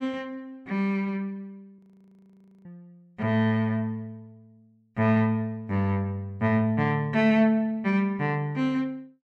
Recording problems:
frozen audio; at 2 s for 1 s

